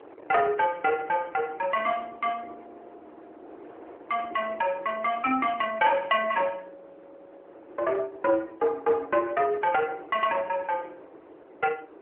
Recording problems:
telephone audio; 280 Hz to 3.4 kHz, AMR-NB
wind on the microphone; below 700 Hz, SNR 20 dB

